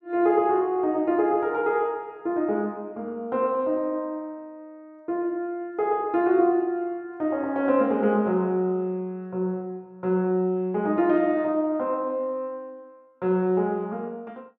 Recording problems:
none

